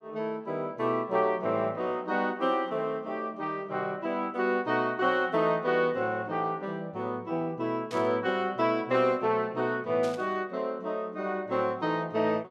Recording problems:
static burst; at 8 s and at 10 s; peak -10 dB vs average level

